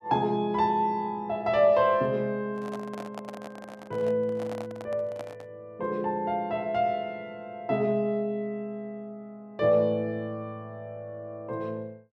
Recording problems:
microphone handling noise; from 2.5 to 5.5 s; peak -7 dB vs average level

